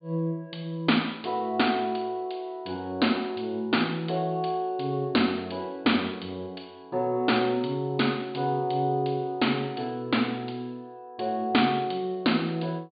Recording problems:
low-pass filter; nothing above 4.7 kHz

